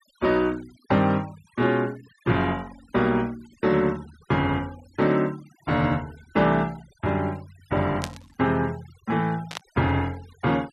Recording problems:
noise reduction artefacts; signal-to-artefact ratio 24 dB
static burst; at 8 s and at 9.5 s; peak -3 dB vs average level

